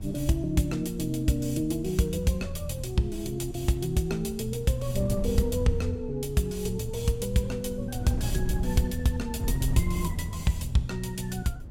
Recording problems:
wind noise; below 100 Hz, SNR 8 dB

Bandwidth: 16 kHz